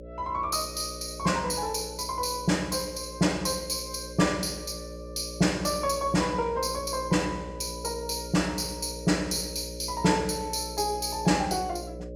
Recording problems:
mains hum; 60 Hz, harmonics up to 600 Hz, SNR 12 dB

